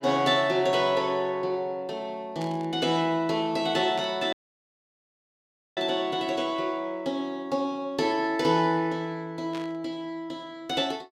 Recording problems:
static burst; at 2.5 s, at 4 s and at 9.5 s; peak -10 dB vs average level
dropout; at 4.5 s for 1.5 s

